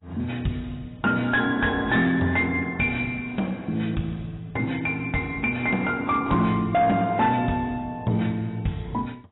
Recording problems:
lossy compression; AAC, log-spectral distance 3 dB, nothing above 3.8 kHz
distortion; soft clipping, signal-to-distortion ratio 12 dB

